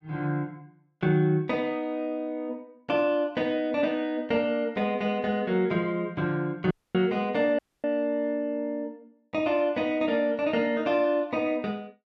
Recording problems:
dropout; at 6.5 s and at 7.5 s

